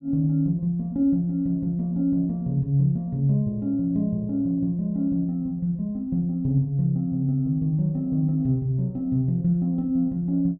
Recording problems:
low-pass filter; nothing above 5.5 kHz

